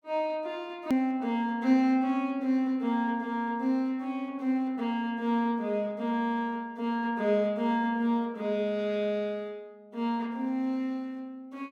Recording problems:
click at an edit; at 1 s

